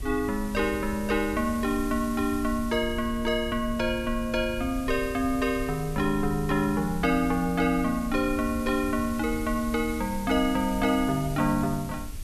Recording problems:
background hiss; slope +2 dB per octave, SNR 18 dB
rumble; below 80 Hz, SNR 13 dB

